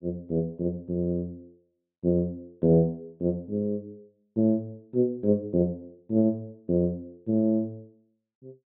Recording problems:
treble cut off; nothing above 3.9 kHz

